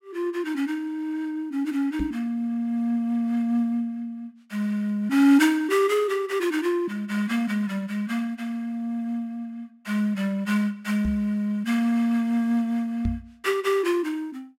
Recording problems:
microphone thump; at 2 s, at 11 s and at 13 s; peak 0 dB vs average level

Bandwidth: 16 kHz